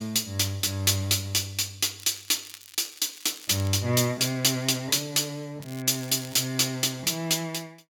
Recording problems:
crackling; from 2 to 3.5 s and at 5.5 s; loose cable, SNR 20 dB

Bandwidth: 17 kHz